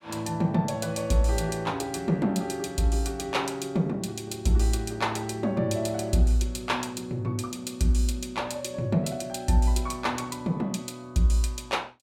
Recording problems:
none

